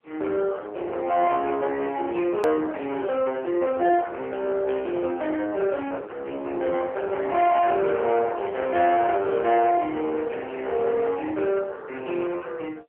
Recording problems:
telephone audio; 320 Hz to 3.1 kHz, AMR-NB
distorted audio; soft clipping, signal-to-distortion ratio 10 dB
edit click; at 2.5 s

